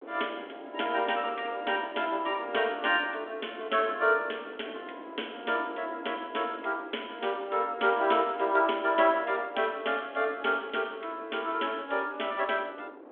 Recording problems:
phone line; 260 Hz to 3.5 kHz, G.726
wind on the microphone; below 630 Hz, SNR 18 dB

